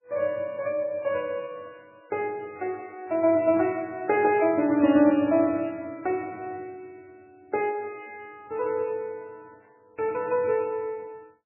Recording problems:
codec artefacts; MP3, log-spectral distance 2 dB, nothing above 2.5 kHz

